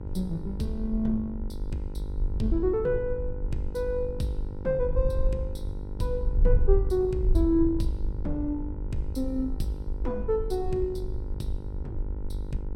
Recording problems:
hum; 50 Hz, harmonics up to 1.4 kHz, SNR 13 dB
wind noise; below 58 Hz, SNR 3 dB

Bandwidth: 16 kHz